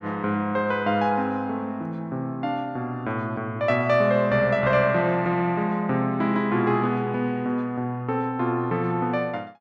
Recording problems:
none

